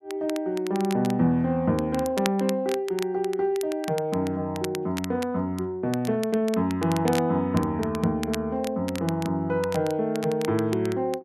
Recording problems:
crackle; vinyl, SNR 15 dB

